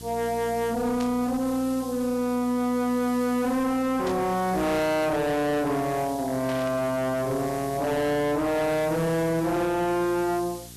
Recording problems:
distorted audio; hard clipping, signal-to-distortion ratio 7 dB
hum; 60 Hz, harmonics up to 780 Hz, SNR 20 dB
hiss; slope +3 dB per octave, SNR 18 dB
static burst; at 1 s, at 4 s and at 6.5 s; peak -10 dB vs average level

